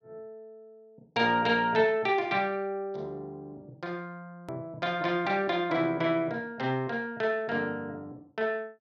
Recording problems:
edit click; at 4.5 s

